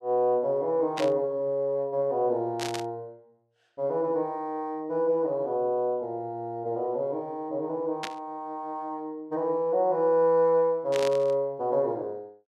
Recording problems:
static burst; 4 times, first at 1 s; peak -2 dB vs average level

